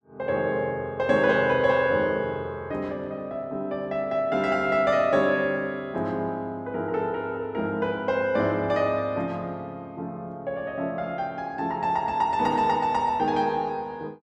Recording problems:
none

